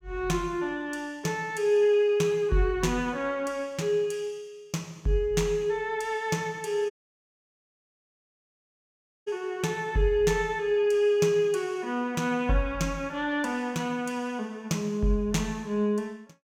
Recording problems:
audio cutting out; at 7 s for 2.5 s

